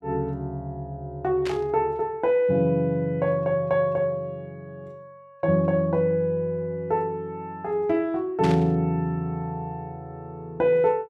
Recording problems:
static burst; at 1.5 s and at 8.5 s; peak -5 dB vs average level

